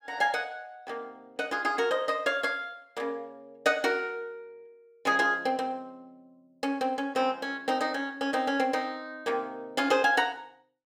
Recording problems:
none

